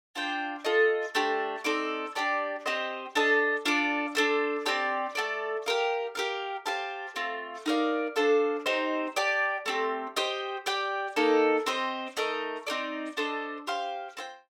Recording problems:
none

